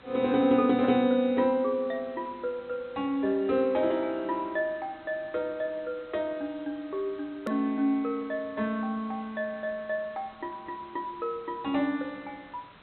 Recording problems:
treble missing; nothing above 4.1 kHz
background hiss; SNR 24 dB
click at an edit; at 7.5 s

